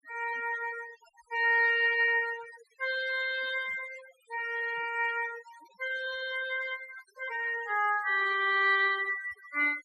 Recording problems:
denoising artefacts; signal-to-artefact ratio 19 dB

